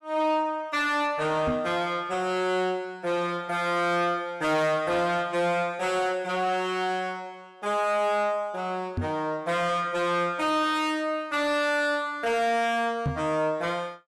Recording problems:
distorted audio; soft clipping, signal-to-distortion ratio 10 dB
microphone bump; at 1.5 s, at 9 s and at 13 s; peak +2 dB vs average level

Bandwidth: 15.5 kHz